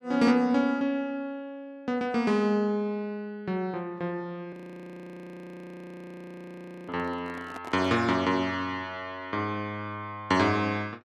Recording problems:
microphone handling noise; from 4.5 to 8 s; peak -9 dB vs average level
frozen audio; at 4.5 s for 2.5 s

